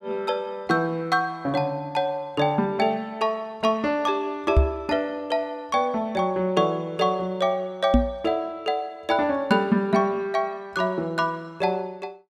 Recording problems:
microphone thump; at 4.5 s and at 8 s; peak +9 dB vs average level

